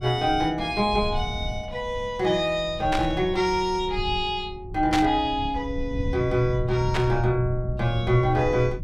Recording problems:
low-frequency rumble; below 110 Hz, SNR 10 dB
burst of static; at 3 s, at 5 s and at 7 s; peak +1 dB vs average level

